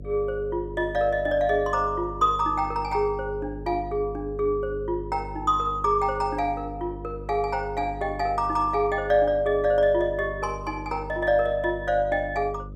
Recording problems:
electrical hum; 50 Hz, harmonics up to 550 Hz, SNR 14 dB

